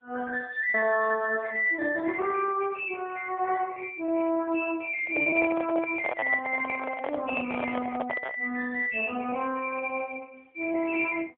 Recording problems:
telephone audio; 260 Hz to 3.5 kHz, AMR-NB
lost packets; 3% of the sound replaced, filled with repeated pitch periods
microphone handling noise; from 5 to 8.5 s; peak +1 dB vs average level

